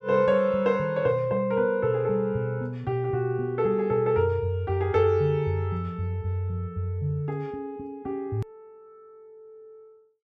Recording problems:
edit click; at 8.5 s

